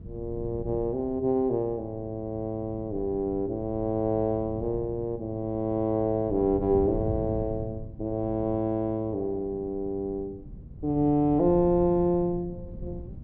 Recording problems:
wind noise; below 160 Hz, SNR 14 dB

